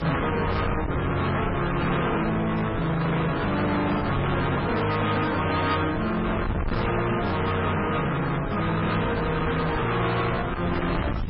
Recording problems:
lossy compression; AAC, then MP3, log-spectral distance 8 dB, nothing above 5.3 kHz
distortion; soft clipping, signal-to-distortion ratio 6 dB
background hiss; SNR 14 dB
wind noise; below 710 Hz, SNR 7 dB

